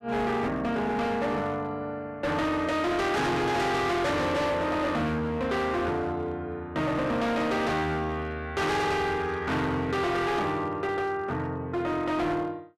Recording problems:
distortion; hard clipping, signal-to-distortion ratio 6 dB

